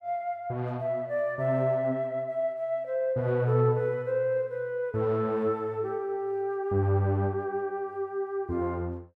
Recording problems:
none

